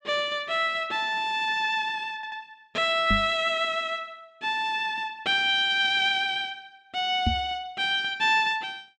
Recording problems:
audio stuttering; at 2 s
knock on the microphone; at 3 s and at 7.5 s; peak +3 dB vs average level

